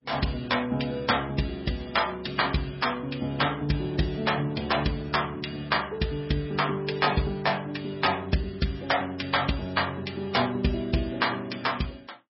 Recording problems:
lossy codec; MP3, log-spectral distance 5 dB, nothing above 5.5 kHz

